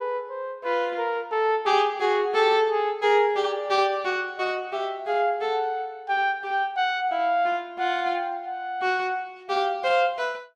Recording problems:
none

